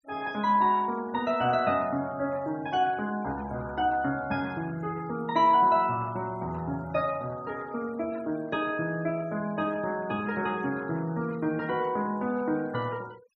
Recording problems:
denoising artefacts; signal-to-artefact ratio 24 dB

